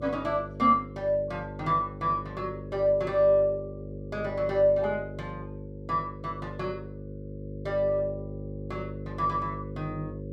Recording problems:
electrical hum; 50 Hz, harmonics up to 550 Hz, SNR 11 dB

